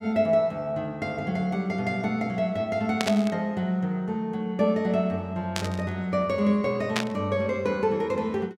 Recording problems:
burst of static; at 3 s, at 5.5 s and at 7 s; peak +4 dB vs average level

